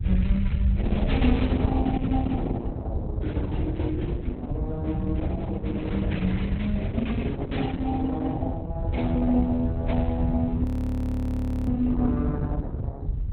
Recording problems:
lossy codec; Opus, log-spectral distance 2 dB
low-frequency rumble; below 92 Hz, SNR -3 dB
audio freezing; at 11 s for 1 s

